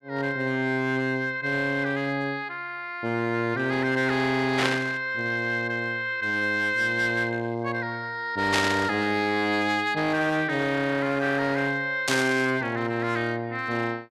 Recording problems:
distorted audio; hard clipping, signal-to-distortion ratio 10 dB
static burst; at 4.5 s, at 8.5 s and at 12 s; peak +5 dB vs average level

